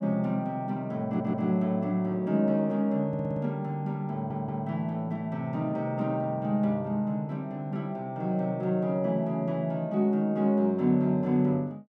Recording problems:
stutter; at 1 s, at 3 s and at 4 s

